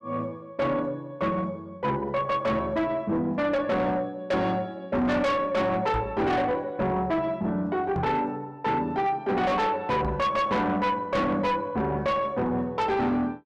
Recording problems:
distortion; soft clipping, signal-to-distortion ratio 8 dB
microphone bump; at 6 s, at 8 s and at 10 s; peak 0 dB vs average level

